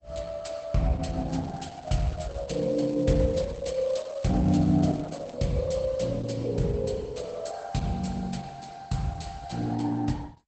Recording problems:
lossy compression; Opus, log-spectral distance 4 dB, nothing above 8 kHz
crackling; from 1.5 to 5.5 s; loose cable, SNR 26 dB

